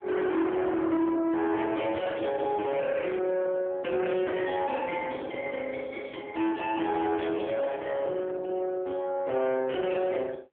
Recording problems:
phone line; 150 Hz to 2.6 kHz, AMR-NB
distorted audio; soft clipping, signal-to-distortion ratio 7 dB

